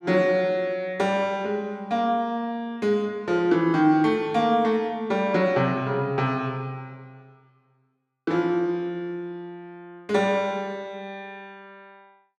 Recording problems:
none

